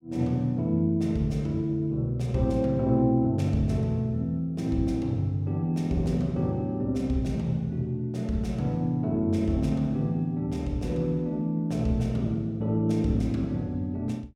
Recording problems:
none

